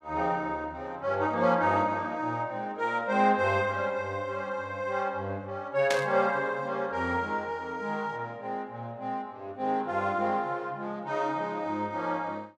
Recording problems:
static burst; at 6 s; peak +2 dB vs average level

